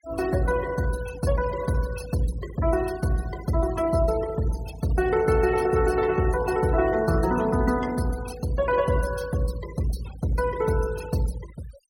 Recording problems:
noise reduction artefacts; signal-to-artefact ratio 17 dB

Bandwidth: 16.5 kHz